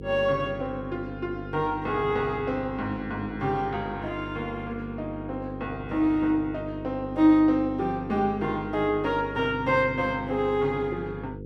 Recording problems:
hum; 50 Hz, harmonics up to 500 Hz, SNR 12 dB

